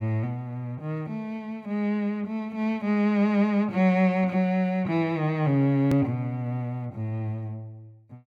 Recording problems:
edit click; at 6 s

